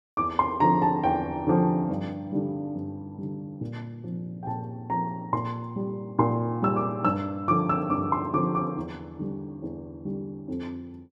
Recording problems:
none

